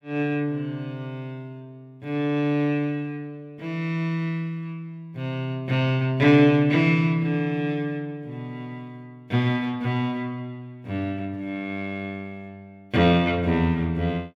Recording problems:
none

